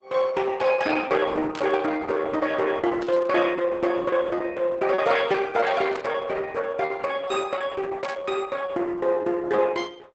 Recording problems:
codec artefacts; Opus, log-spectral distance 3 dB, nothing above 7.6 kHz
packet loss; 10% of the sound replaced, filled with repeated pitch periods
burst of static; 4 times, first at 1.5 s; peak -8 dB vs average level

